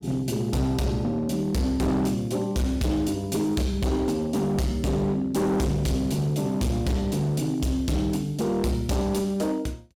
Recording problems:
distortion; hard clipping, signal-to-distortion ratio 8 dB

